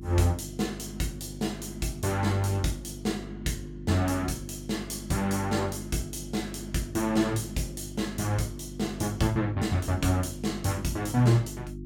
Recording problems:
hum; 50 Hz, harmonics up to 350 Hz, SNR 11 dB

